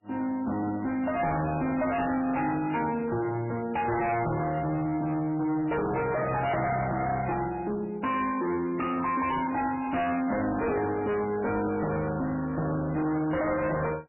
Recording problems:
lossy codec; MP3, log-spectral distance 4 dB, nothing above 2.6 kHz
distorted audio; hard clipping, signal-to-distortion ratio 6 dB

